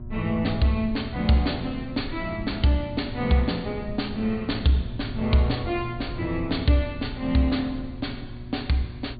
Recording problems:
low-pass filter; nothing above 4.6 kHz
mains hum; 60 Hz, harmonics up to 960 Hz, SNR 15 dB
low-frequency rumble; below 110 Hz, SNR 14 dB

